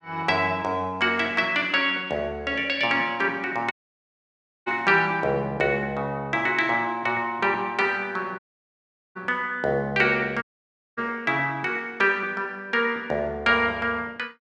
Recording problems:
dropout; at 3.5 s for 1 s, at 8.5 s for 1 s and at 10 s for 0.5 s

